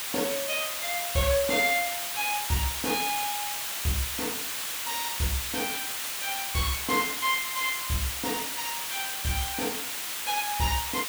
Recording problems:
hiss; SNR 0 dB

